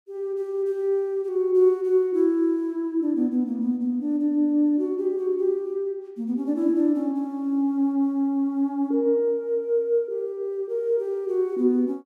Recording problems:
none

